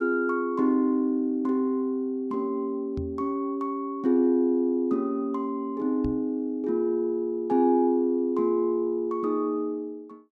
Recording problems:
microphone bump; at 3 s and at 6 s; peak -5 dB vs average level

